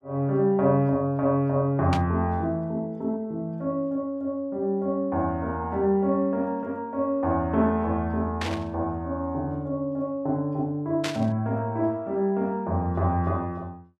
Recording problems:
static burst; at 2 s, at 8.5 s and at 11 s; peak 0 dB vs average level

